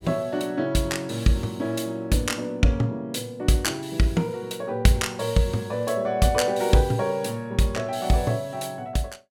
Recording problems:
none

